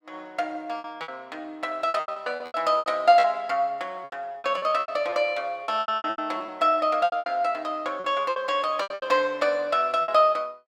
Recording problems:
packet loss; 17% of the sound replaced, filled with repeated pitch periods

